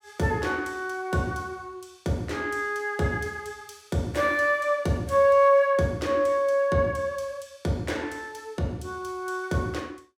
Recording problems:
none

